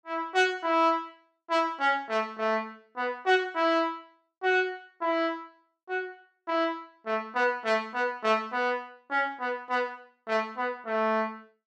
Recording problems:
none

